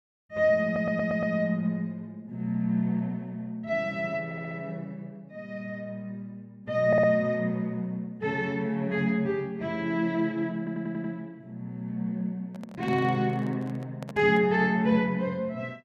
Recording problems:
stutter; 4 times, first at 0.5 s
microphone handling noise; from 12 to 14 s; peak -8 dB vs average level

